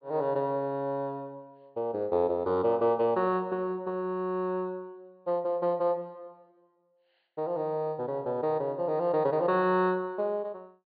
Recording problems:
treble missing; nothing above 4.8 kHz

